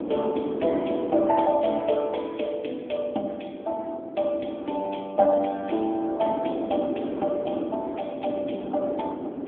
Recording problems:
phone line; 240 Hz to 3.3 kHz, AMR-NB
wind noise; below 470 Hz, SNR 8 dB

